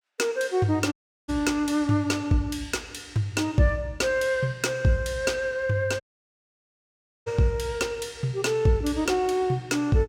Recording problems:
dropout; at 1 s and at 6 s for 1.5 s

